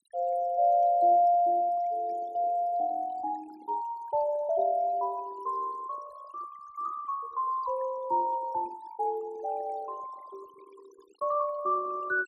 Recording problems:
denoising artefacts; signal-to-artefact ratio 21 dB

